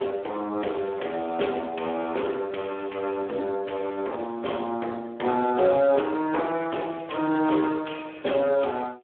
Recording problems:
phone line; 260 Hz to 3.4 kHz, Speex
distorted audio; hard clipping, uneven, signal-to-distortion ratio 17 dB

